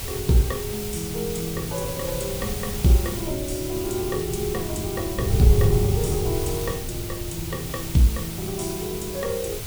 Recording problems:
background hiss; SNR 7 dB
wind noise; below 120 Hz, SNR 5 dB

